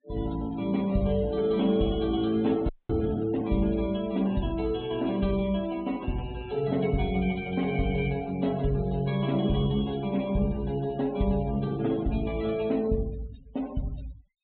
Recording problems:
low-pass filter; nothing above 4 kHz
noise reduction artefacts; signal-to-artefact ratio 21 dB
frozen audio; at 2.5 s

